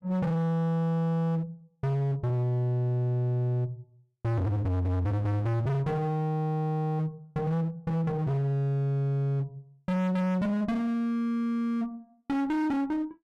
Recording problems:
distortion; hard clipping, uneven, signal-to-distortion ratio 6 dB

